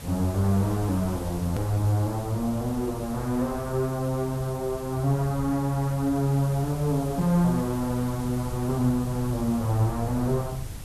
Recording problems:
hum; 50 Hz, harmonics up to 550 Hz, SNR 24 dB
background hiss; slope -3 dB per octave, SNR 17 dB
low-frequency rumble; below 130 Hz, SNR 15 dB
click at an edit; at 1.5 s

